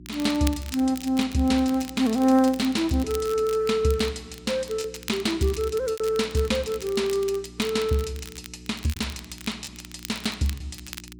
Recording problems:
hum; 60 Hz, harmonics up to 360 Hz, SNR 21 dB
crackle; vinyl, SNR 17 dB
packet loss; 3% of the sound replaced, filled with repeated pitch periods

